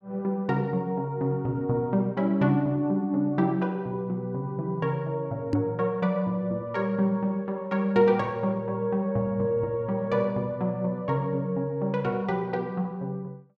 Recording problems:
knock on the microphone; at 5.5 s; peak +6 dB vs average level

